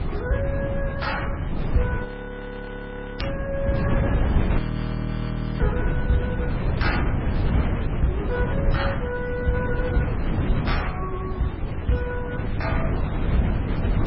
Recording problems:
codec artefacts; MP3, then MP3, log-spectral distance 2 dB, nothing above 5.3 kHz
electrical hum; 60 Hz, harmonics up to 1.4 kHz, SNR 23 dB
wind noise; below 210 Hz, SNR -3 dB
audio freezing; at 2 s for 1 s and at 4.5 s for 1 s
crackle; at 3 s; loose cable, SNR 7 dB

